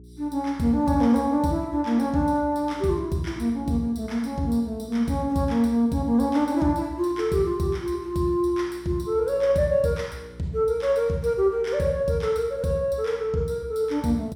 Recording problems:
hum; 60 Hz, harmonics up to 420 Hz, SNR 23 dB

